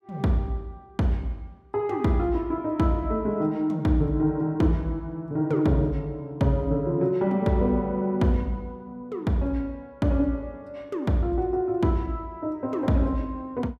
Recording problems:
none

